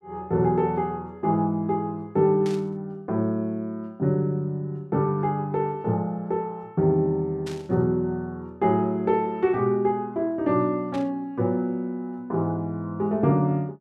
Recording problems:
burst of static; at 2.5 s, at 7.5 s and at 11 s; peak -10 dB vs average level

